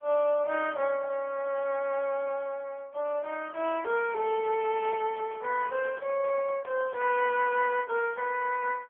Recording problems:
telephone audio; 340 Hz to 3.2 kHz, AMR-NB
handling noise; from 4.5 to 8 s; peak -14 dB vs average level

